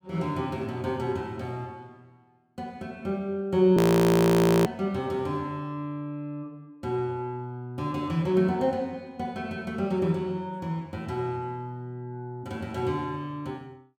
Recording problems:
audio freezing; at 4 s for 1 s

